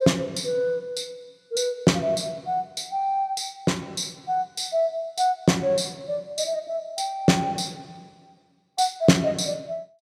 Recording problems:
none

